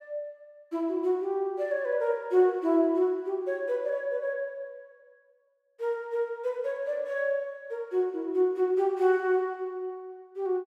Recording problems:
none

